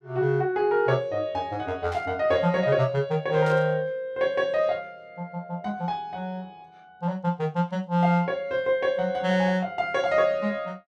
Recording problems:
burst of static; at 2 s and at 3.5 s; peak -13 dB vs average level

